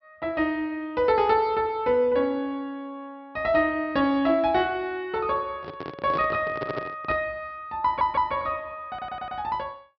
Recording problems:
treble missing; nothing above 5.5 kHz
handling noise; from 5.5 to 7 s; peak -3 dB vs average level
audio stuttering; at 6.5 s, at 8 s and at 9 s

